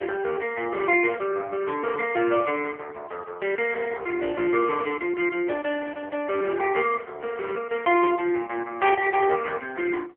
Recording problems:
phone line; 300 Hz to 3 kHz, AMR-NB

